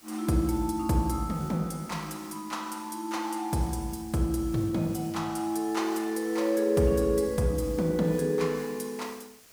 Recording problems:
background hiss; slope -1 dB per octave, SNR 22 dB

